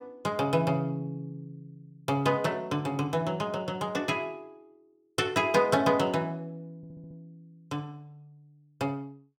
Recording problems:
audio stuttering; at 7 s

